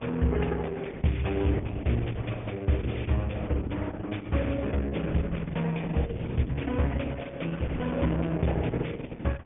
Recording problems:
low-pass filter; nothing above 3.3 kHz
lossy compression; Opus, log-spectral distance 6 dB
wind on the microphone; below 490 Hz, SNR 23 dB

